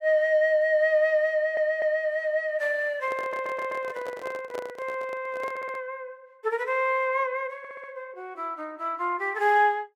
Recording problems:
audio stuttering; 4 times, first at 1.5 s
handling noise; from 3 to 6 s; peak -6 dB vs average level

